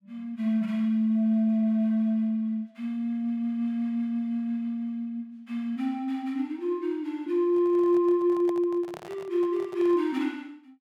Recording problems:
handling noise; from 7.5 to 10 s; peak -10 dB vs average level

